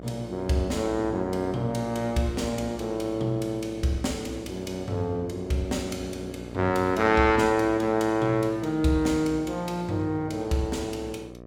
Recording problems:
electrical hum; 60 Hz, harmonics up to 1.3 kHz, SNR 15 dB

